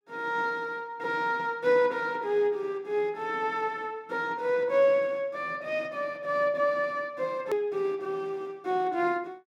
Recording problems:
click at an edit; at 7.5 s

